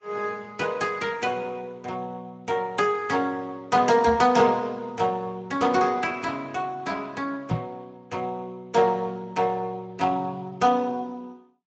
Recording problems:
codec artefacts; Vorbis, then Speex, log-spectral distance 3 dB, nothing above 7.3 kHz
knock on the microphone; at 4 s and at 7.5 s; peak +2 dB vs average level

